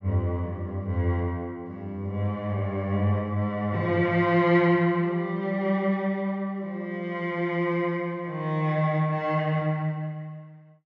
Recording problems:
treble missing; nothing above 7.3 kHz

